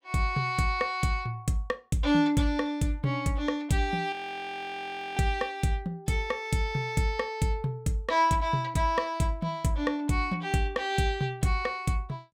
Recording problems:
audio freezing; at 4 s for 1 s

